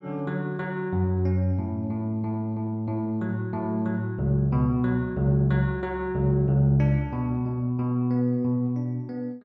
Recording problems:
none

